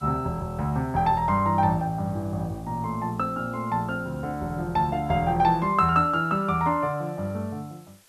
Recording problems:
hiss; slope 0 dB per octave, SNR 30 dB

